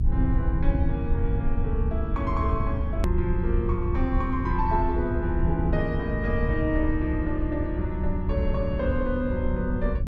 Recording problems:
electrical hum; 50 Hz, harmonics up to 700 Hz, SNR 11 dB
rumble; below 84 Hz, SNR 0 dB
hard cut with a click; at 3 s

